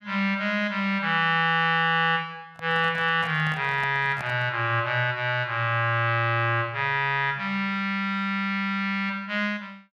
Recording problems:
handling noise; from 2.5 to 4.5 s; peak -9 dB vs average level

